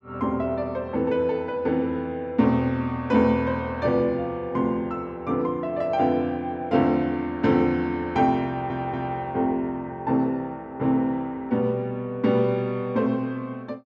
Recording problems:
stutter; at 8.5 s

